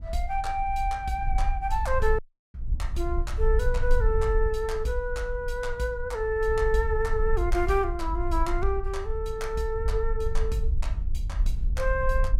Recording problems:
low-frequency rumble; below 54 Hz, SNR 3 dB
dropout; at 2 s

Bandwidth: 16 kHz